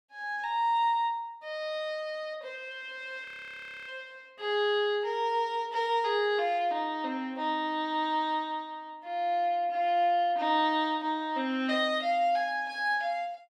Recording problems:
audio freezing; at 3.5 s for 0.5 s

